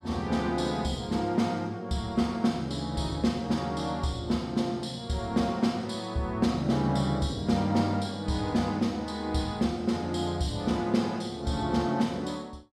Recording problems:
none

